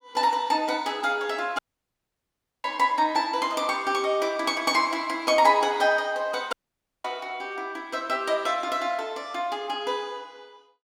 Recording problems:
audio cutting out; at 1.5 s for 1 s and at 6.5 s for 0.5 s

